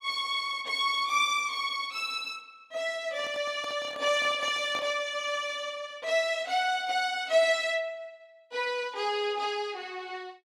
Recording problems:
microphone handling noise; from 3 to 5 s; peak -8 dB vs average level

